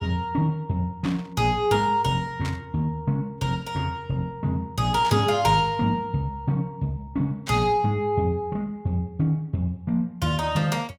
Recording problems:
burst of static; 4 times, first at 1 s; peak -7 dB vs average level

